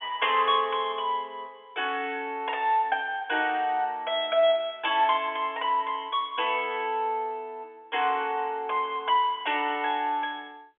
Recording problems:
phone line; 240 Hz to 3.5 kHz, G.711

